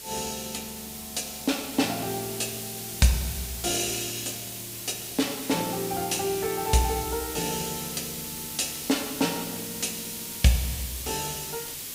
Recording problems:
background hiss; SNR 5 dB

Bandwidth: 15.5 kHz